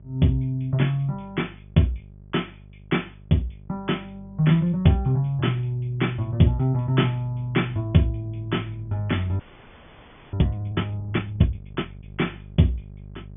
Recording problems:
low-pass filter; nothing above 3.5 kHz
electrical hum; 50 Hz, harmonics up to 600 Hz, SNR 20 dB
audio freezing; at 9.5 s for 1 s

